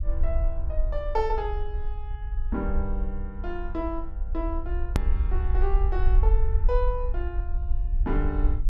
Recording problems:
rumble; below 56 Hz, SNR -4 dB
hard cut with a click; at 5 s

